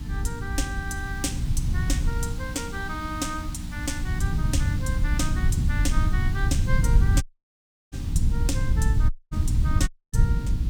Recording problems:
hum; 60 Hz, harmonics up to 300 Hz, SNR 8 dB
background hiss; SNR 13 dB
rumble; below 100 Hz, SNR -6 dB
dropout; at 7 s for 0.5 s, at 9 s and at 10 s

